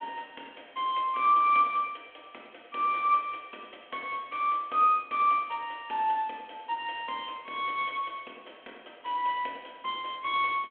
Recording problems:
phone line; 260 Hz to 3.4 kHz, G.726

